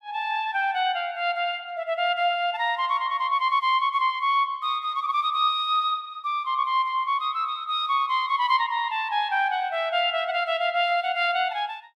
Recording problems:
none

